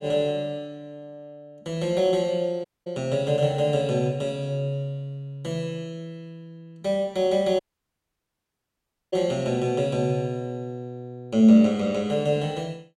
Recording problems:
dropout; at 2.5 s and at 7.5 s for 1.5 s

